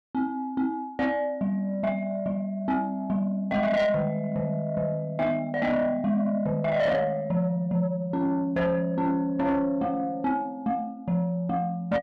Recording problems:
distortion; soft clipping, signal-to-distortion ratio 12 dB

